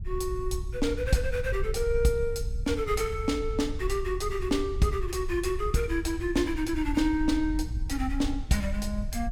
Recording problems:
wind noise; below 66 Hz, SNR 7 dB

